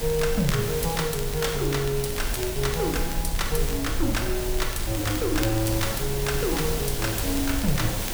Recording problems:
hum; 50 Hz, harmonics up to 350 Hz, SNR 21 dB
background hiss; SNR 4 dB
low-frequency rumble; below 58 Hz, SNR 7 dB
crackling; vinyl, SNR 15 dB

